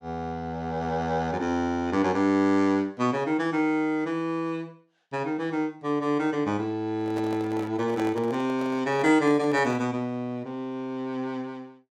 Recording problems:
handling noise; from 7 to 10 s; peak -5 dB vs average level

